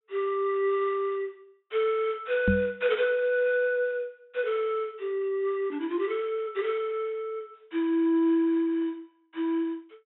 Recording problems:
treble cut off; nothing above 3.8 kHz
knock on the microphone; at 2.5 s; peak +6 dB vs average level

